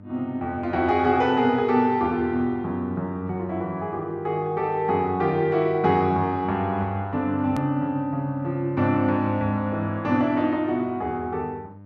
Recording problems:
electrical hum; 50 Hz, harmonics up to 1.2 kHz, SNR 21 dB
click at an edit; at 7.5 s

